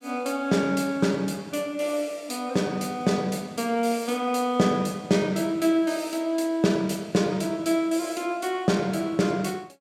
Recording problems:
none

